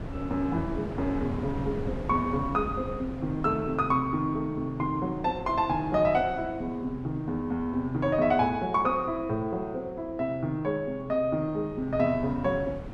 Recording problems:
wind noise; below 350 Hz, SNR 12 dB

